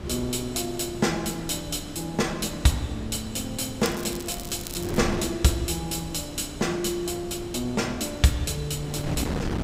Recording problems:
wind noise; below 430 Hz, SNR 9 dB
crackle; from 4 to 5 s; loose cable, SNR 11 dB

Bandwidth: 15.5 kHz